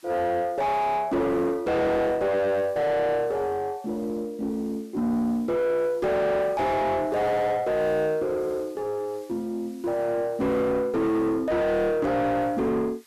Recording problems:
distorted audio; soft clipping, signal-to-distortion ratio 6 dB
hiss; slope +2 dB per octave, SNR 29 dB

